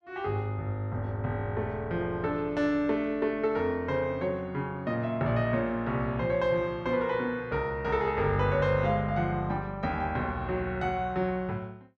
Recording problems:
none

